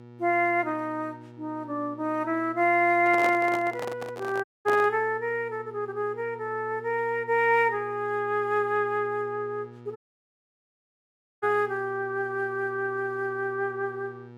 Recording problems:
electrical hum; 60 Hz, harmonics up to 1.8 kHz, SNR 21 dB
handling noise; from 3 to 5 s; peak -1 dB vs average level
dropout; at 4.5 s and at 10 s for 1.5 s

